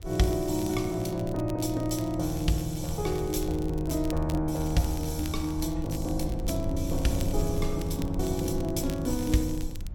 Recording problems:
rumble; below 68 Hz, SNR 9 dB
crackle; vinyl, SNR 19 dB

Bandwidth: 17 kHz